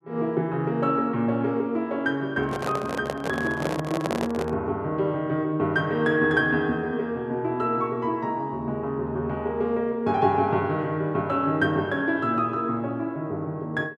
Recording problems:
microphone handling noise; from 2.5 to 4.5 s; peak +1 dB vs average level

